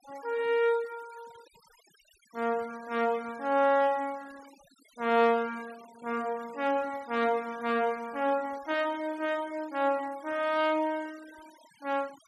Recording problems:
denoising artefacts; signal-to-artefact ratio 23 dB

